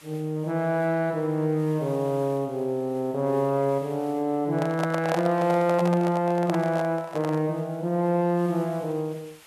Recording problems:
background hiss; SNR 27 dB
microphone handling noise; from 4.5 to 7.5 s; peak 0 dB vs average level

